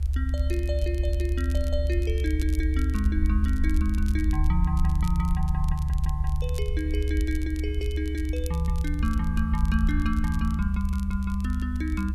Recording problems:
hiss; slope -5 dB per octave, SNR 27 dB
rumble; below 72 Hz, strongest tone 72 Hz, SNR -4 dB
crackling; vinyl, SNR 18 dB

